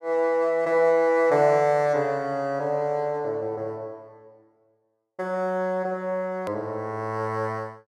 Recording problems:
click at an edit; at 6.5 s

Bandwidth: 12.5 kHz